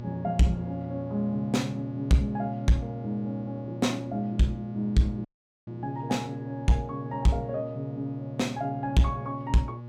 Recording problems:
distortion; soft clipping, signal-to-distortion ratio 10 dB
electrical hum; 60 Hz, harmonics up to 840 Hz, SNR 10 dB
dropout; at 5.5 s

